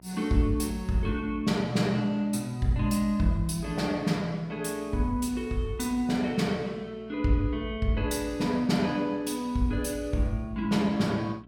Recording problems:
electrical hum; 60 Hz, harmonics up to 1 kHz, SNR 25 dB

